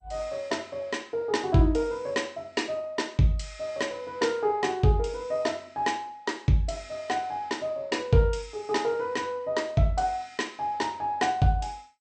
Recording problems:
codec artefacts; MP2, log-spectral distance 2 dB, nothing above 8.5 kHz

